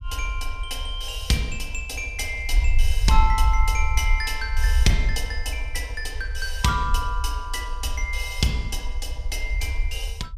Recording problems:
low-frequency rumble; below 58 Hz, SNR 1 dB

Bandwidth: 14.5 kHz